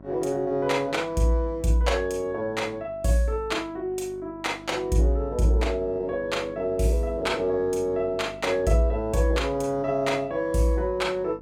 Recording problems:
hum; 50 Hz, harmonics up to 1.1 kHz, SNR 20 dB

